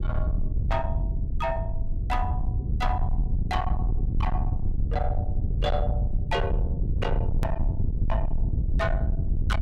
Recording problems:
distortion; soft clipping, signal-to-distortion ratio 8 dB
low-frequency rumble; below 98 Hz, SNR -4 dB
hard cut with a click; at 7.5 s

